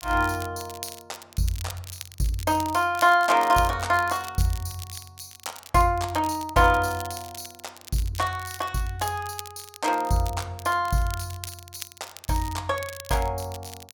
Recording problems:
crackle; vinyl, SNR 16 dB

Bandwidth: 17.5 kHz